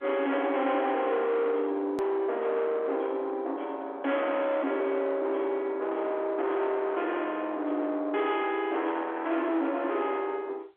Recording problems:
phone line; 280 Hz to 3.4 kHz, G.711
distortion; soft clipping, signal-to-distortion ratio 8 dB
click at an edit; at 2 s

